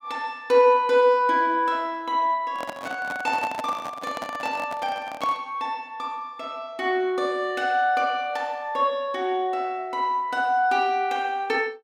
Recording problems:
microphone handling noise; from 2.5 to 5.5 s; peak -3 dB vs average level

